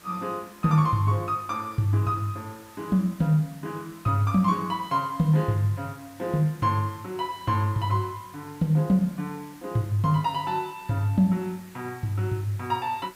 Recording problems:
background hiss; SNR 24 dB

